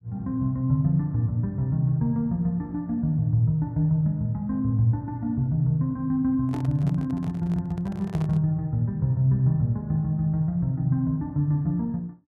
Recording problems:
microphone handling noise; from 6.5 to 8.5 s; peak -9 dB vs average level

